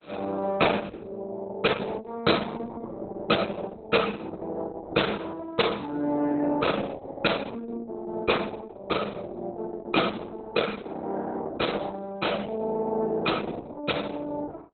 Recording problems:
lossy codec; Opus, log-spectral distance 4 dB, nothing above 4.1 kHz

